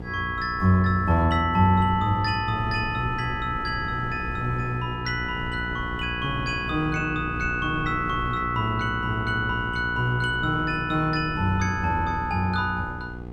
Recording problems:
hum; 60 Hz, harmonics up to 1.3 kHz, SNR 11 dB
wind noise; below 220 Hz, SNR 15 dB

